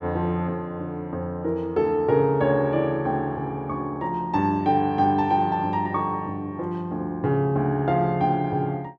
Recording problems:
none

